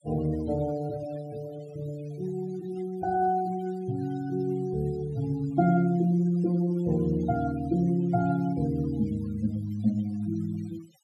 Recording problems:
noise reduction artefacts; signal-to-artefact ratio 21 dB

